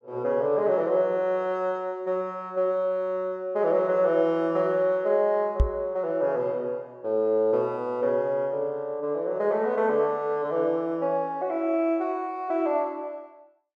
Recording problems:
microphone thump; at 5.5 s; peak +7 dB vs average level

